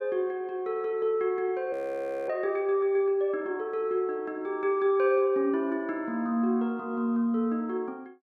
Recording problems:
frozen audio; at 1.5 s for 0.5 s

